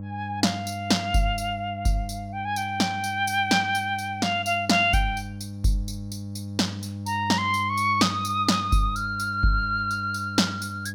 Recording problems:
mains hum; 50 Hz, harmonics up to 600 Hz, SNR 11 dB

